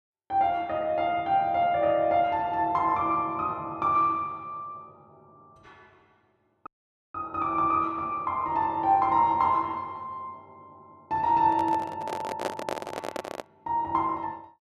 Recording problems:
dropout; at 6.5 s
microphone handling noise; from 11 to 13 s; peak 0 dB vs average level

